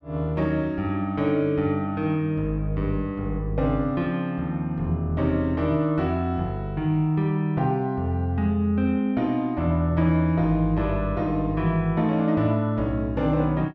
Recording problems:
none

